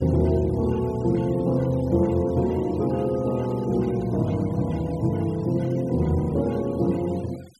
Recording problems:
noise reduction artefacts; signal-to-artefact ratio 24 dB

